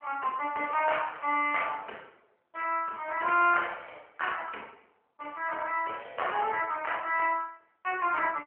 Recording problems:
telephone audio; 300 Hz to 3 kHz, AMR-NB

